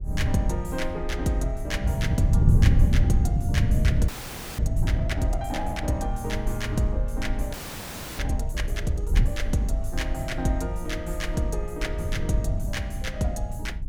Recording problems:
low-frequency rumble; below 60 Hz, SNR 5 dB
wind on the microphone; below 120 Hz, SNR -5 dB
audio freezing; at 4 s for 0.5 s and at 7.5 s for 0.5 s

